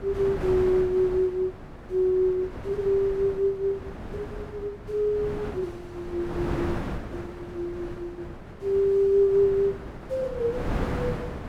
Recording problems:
wind noise; below 560 Hz, SNR 10 dB

